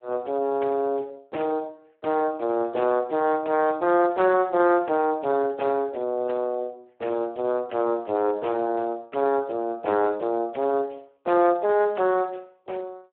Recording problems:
telephone audio; 280 Hz to 3.1 kHz, Speex

